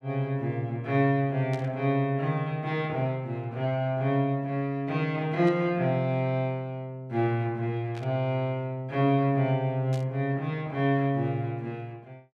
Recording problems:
static burst; 4 times, first at 1.5 s; peak -12 dB vs average level

